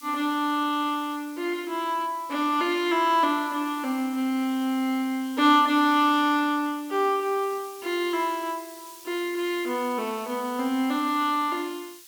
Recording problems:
background hiss; slope +5 dB per octave, SNR 20 dB

